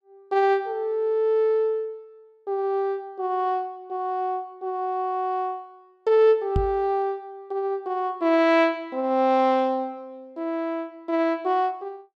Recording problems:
knock on the microphone; at 6.5 s; peak +3 dB vs average level

